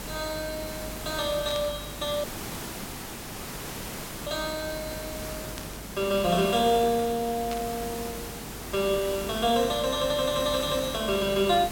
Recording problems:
hum; 50 Hz, harmonics up to 600 Hz, SNR 19 dB
hiss; slope -4 dB per octave, SNR 9 dB
static burst; at 1.5 s, at 5.5 s and at 7.5 s; peak -6 dB vs average level
dropout; at 2 s for 2 s

